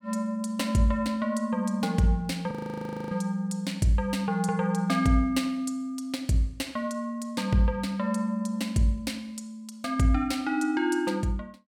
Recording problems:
audio freezing; at 2.5 s for 0.5 s

